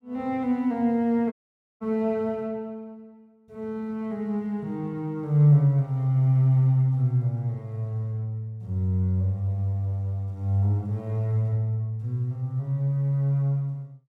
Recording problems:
audio cutting out; at 1.5 s

